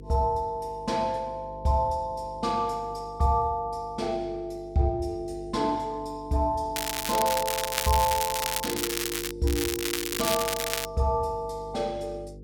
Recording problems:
electrical hum; 50 Hz, harmonics up to 500 Hz, SNR 17 dB
crackle; from 7 to 9.5 s and from 9.5 to 11 s; loose cable, SNR 1 dB

